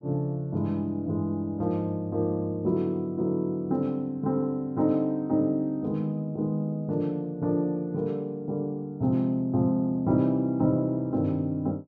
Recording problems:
none

